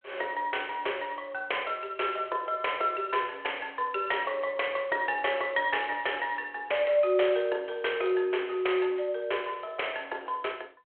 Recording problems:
telephone audio; 320 Hz to 3.3 kHz, G.726

